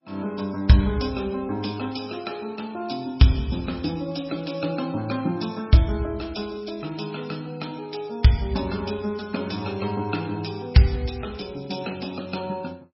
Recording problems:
lossy compression; MP3, log-spectral distance 6 dB, nothing above 5.5 kHz

